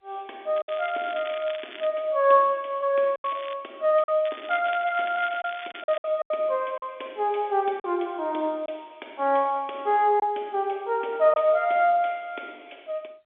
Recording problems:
phone line; 280 Hz to 3.6 kHz, G.711
packet loss; 4% of the sound replaced, filled with silence
crackle; from 0.5 to 2 s, at 3 s and from 4.5 to 6 s; loose cable, SNR 17 dB

